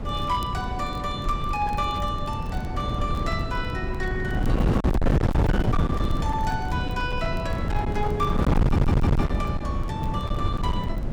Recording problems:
distorted audio; hard clipping, uneven, signal-to-distortion ratio 6 dB
wind on the microphone; below 220 Hz, SNR -4 dB
crackle; vinyl, SNR 25 dB
stutter; at 8.5 s

